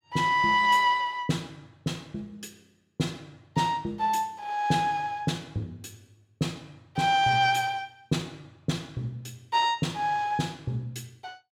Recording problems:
none

